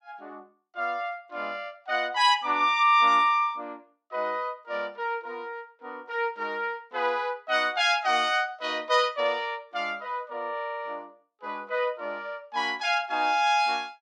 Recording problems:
none

